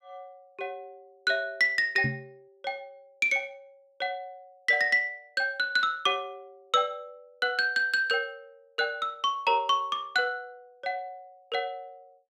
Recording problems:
microphone thump; at 2 s; peak 0 dB vs average level

